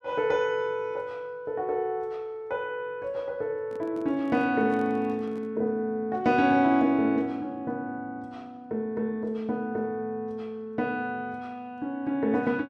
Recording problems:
handling noise; from 3.5 to 5.5 s; peak -11 dB vs average level

